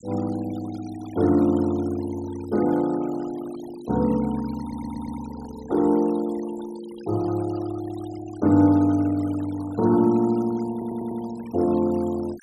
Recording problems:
denoising artefacts; signal-to-artefact ratio 20 dB
audio stuttering; at 4.5 s and at 11 s

